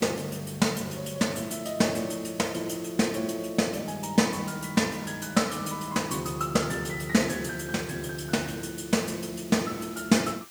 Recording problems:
hiss; slope +2 dB per octave, SNR 19 dB

